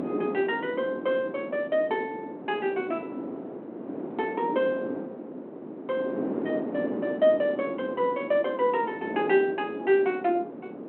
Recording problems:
phone line; 260 Hz to 3.3 kHz, G.726
wind noise; below 480 Hz, SNR 8 dB

